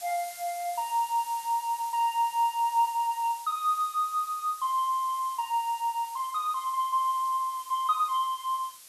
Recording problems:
hiss; slope +3 dB per octave, SNR 16 dB

